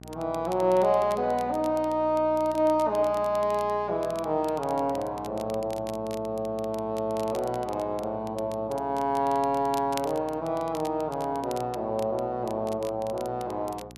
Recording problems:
hum; 60 Hz, harmonics up to 1.1 kHz, SNR 20 dB
crackling; vinyl, SNR 21 dB

